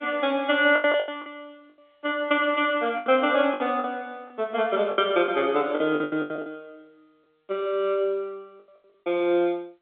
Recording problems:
telephone audio; 240 Hz to 3.6 kHz, G.711
lost packets; 10% of the sound replaced, filled with the last packet

